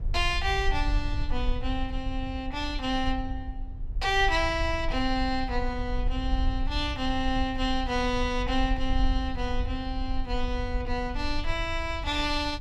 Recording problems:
rumble; below 56 Hz, SNR 5 dB

